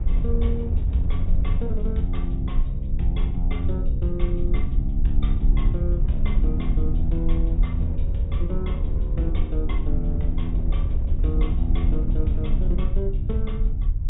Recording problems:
treble missing; nothing above 4 kHz
rumble; below 56 Hz, SNR -4 dB
wind on the microphone; below 220 Hz, SNR 10 dB

